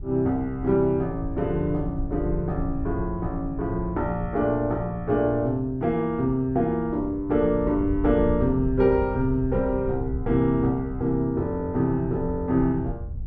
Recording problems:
wind on the microphone; below 100 Hz, SNR 10 dB

